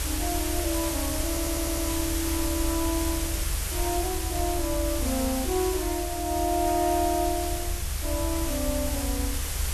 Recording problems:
background hiss; slope -1 dB per octave, SNR 2 dB
low-frequency rumble; below 74 Hz, SNR 4 dB
audio stuttering; at 1.5 s

